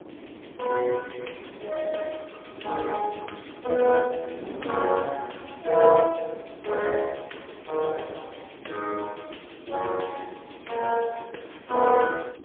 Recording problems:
telephone audio; 300 Hz to 3.4 kHz, AMR-NB, then MP3
wind noise; below 530 Hz, SNR 17 dB

